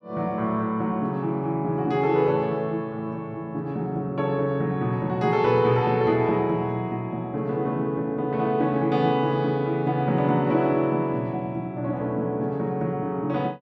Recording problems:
none

